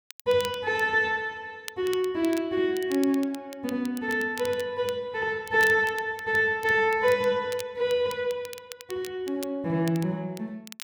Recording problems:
crackle; vinyl, SNR 18 dB

